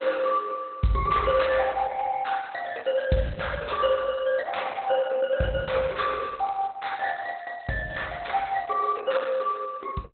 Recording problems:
lossy compression; Opus, log-spectral distance 4 dB, nothing above 4 kHz
crackle; at 2.5 s and from 6 to 9 s; loose cable, SNR 29 dB

